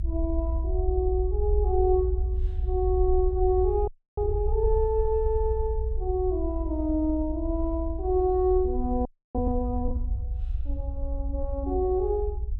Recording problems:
rumble; below 62 Hz, SNR 3 dB
audio freezing; at 4 s and at 9 s

